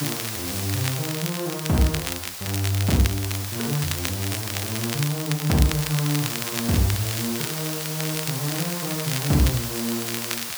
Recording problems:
background hiss; slope +1 dB per octave, SNR 4 dB
crackling; vinyl, SNR 6 dB

